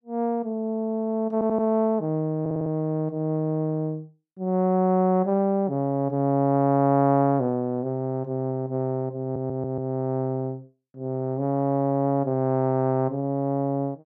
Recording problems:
audio stuttering; at 1.5 s, at 2.5 s and at 9 s

